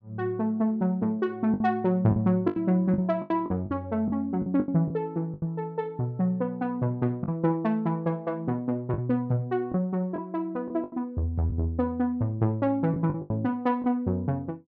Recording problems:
lost packets; 7% of the sound replaced, filled with the last packet

